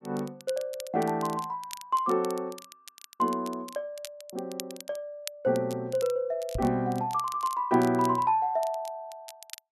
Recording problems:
crackling; vinyl, SNR 17 dB
microphone thump; at 6.5 s; peak -1 dB vs average level

